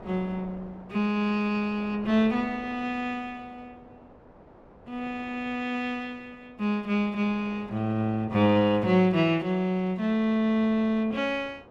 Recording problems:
wind noise; below 780 Hz, SNR 22 dB

